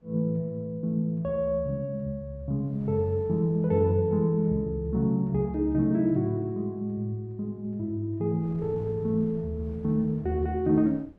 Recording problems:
wind noise; below 350 Hz, SNR 24 dB

